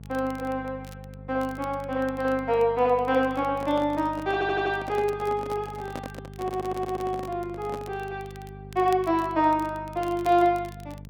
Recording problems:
hum; 50 Hz, harmonics up to 650 Hz, SNR 17 dB
crackle; vinyl, SNR 26 dB
handling noise; from 3.5 to 8 s; peak -6 dB vs average level
stutter; at 4.5 s and at 6.5 s

